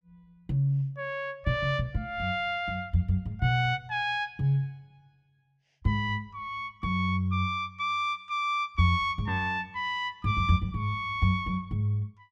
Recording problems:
none

